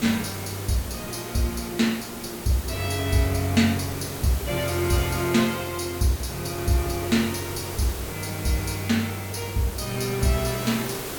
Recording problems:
background hiss; slope -4 dB per octave, SNR 8 dB
wind on the microphone; below 310 Hz, SNR 21 dB

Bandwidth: 18 kHz